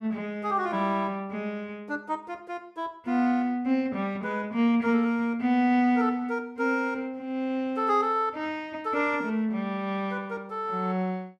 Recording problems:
none

